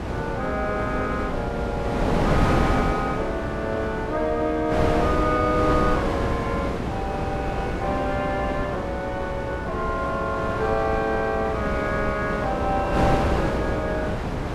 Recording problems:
hum; 60 Hz, harmonics up to 420 Hz, SNR 12 dB
wind on the microphone; below 750 Hz, SNR 1 dB

